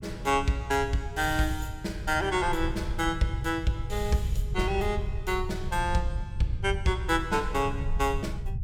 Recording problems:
low-frequency rumble; below 90 Hz, SNR 6 dB

